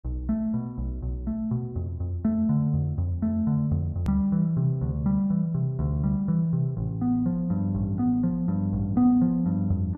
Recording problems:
edit click; at 4 s

